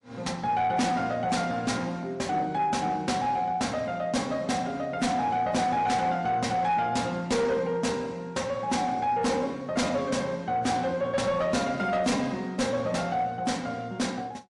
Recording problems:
codec artefacts; MP3, log-spectral distance 2 dB, nothing above 11 kHz
distortion; soft clipping, signal-to-distortion ratio 11 dB

